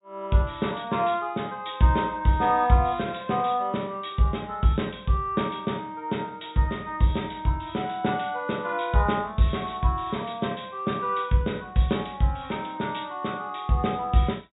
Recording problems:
low-pass filter; nothing above 4 kHz

